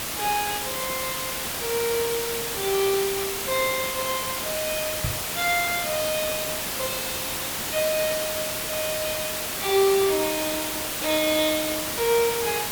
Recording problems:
background hiss; slope -1 dB per octave, SNR 0 dB
crackling; at 1.5 s; loose cable, SNR 22 dB
microphone bump; at 5 s; peak +1 dB vs average level

